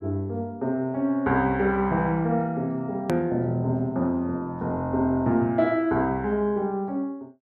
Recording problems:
click at an edit; at 3 s

